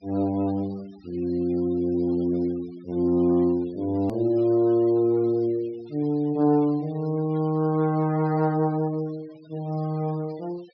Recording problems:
treble cut off; nothing above 5.5 kHz
denoising artefacts; signal-to-artefact ratio 26 dB
hard cut with a click; at 4 s

